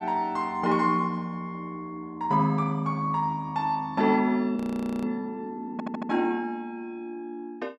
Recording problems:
frozen audio; at 4.5 s
audio stuttering; at 5.5 s

